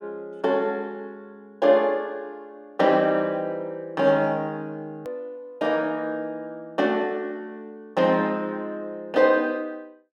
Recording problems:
click at an edit; at 5 s

